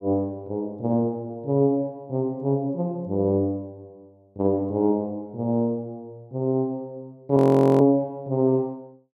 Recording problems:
audio freezing; at 7.5 s

